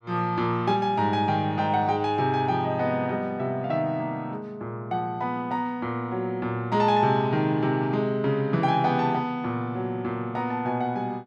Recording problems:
none

